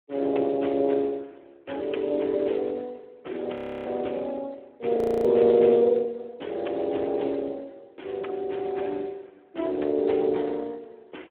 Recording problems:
telephone audio; 260 Hz to 3.3 kHz, Speex
frozen audio; at 3.5 s and at 5 s

